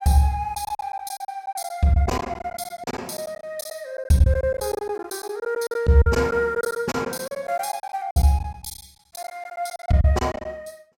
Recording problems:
lost packets; 15% of the sound replaced, filled with silence

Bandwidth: 16.5 kHz